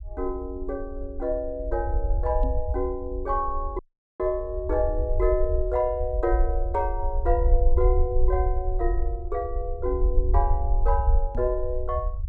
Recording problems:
low-frequency rumble; below 58 Hz, SNR 0 dB
microphone thump; at 2.5 s and at 11 s; peak -2 dB vs average level
dropout; at 4 s

